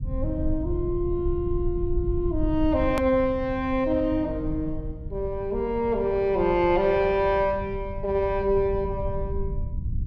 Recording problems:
low-frequency rumble; below 94 Hz, SNR 9 dB
hard cut with a click; at 3 s

